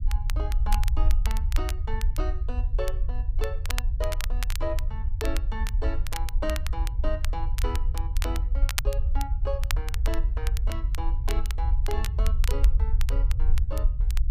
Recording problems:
rumble; below 58 Hz, SNR -9 dB
crackling; vinyl, SNR 3 dB

